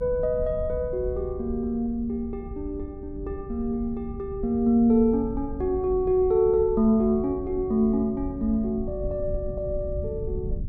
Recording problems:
low-frequency rumble; below 92 Hz, SNR 12 dB

